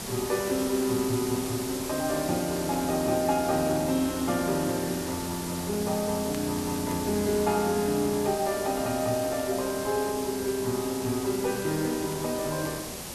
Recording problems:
hiss; SNR 7 dB
crackle; vinyl, SNR 28 dB

